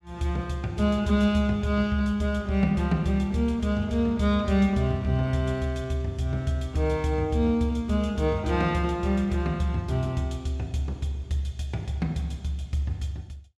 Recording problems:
none

